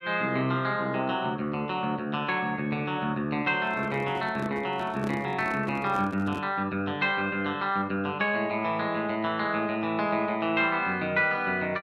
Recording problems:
microphone handling noise; from 3.5 to 6.5 s; peak -5 dB vs average level

